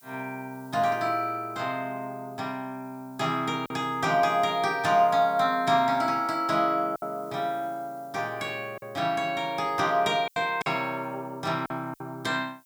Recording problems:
background hiss; slope +5 dB per octave, SNR 29 dB
packet loss; 3% of the sound replaced, filled with silence

